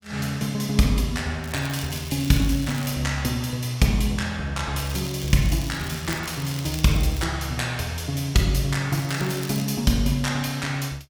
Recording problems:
crackle; from 1.5 to 3 s, from 5 to 7 s and at 9 s; loose cable, SNR 15 dB

